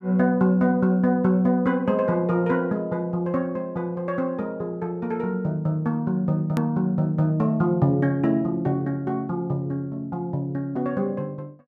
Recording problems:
edit click; at 6.5 s

